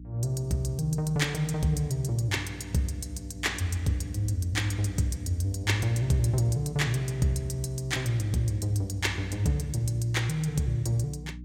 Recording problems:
hum; 60 Hz, harmonics up to 300 Hz, SNR 14 dB

